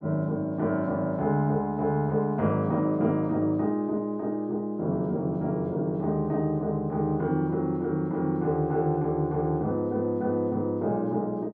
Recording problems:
none

